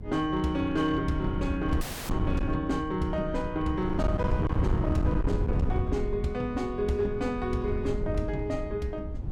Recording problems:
distortion; hard clipping, signal-to-distortion ratio 11 dB
electrical hum; 60 Hz, harmonics up to 540 Hz, SNR 24 dB
wind on the microphone; below 130 Hz, SNR 3 dB
audio cutting out; at 2 s

